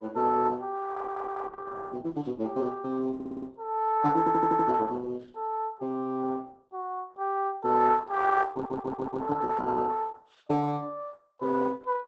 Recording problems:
codec artefacts; Opus, log-spectral distance 3 dB, nothing above 7.8 kHz
audio stuttering; 4 times, first at 1 s

